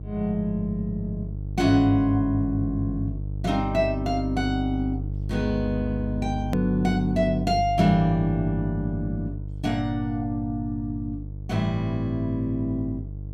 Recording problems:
hum; 50 Hz, harmonics up to 450 Hz, SNR 7 dB
click at an edit; at 6.5 s

